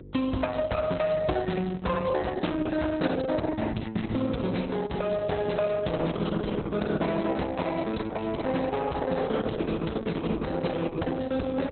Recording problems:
lossy codec; Opus, log-spectral distance 6 dB, nothing above 4.1 kHz
distortion; hard clipping, signal-to-distortion ratio 12 dB
hum; 50 Hz, harmonics up to 550 Hz, SNR 16 dB

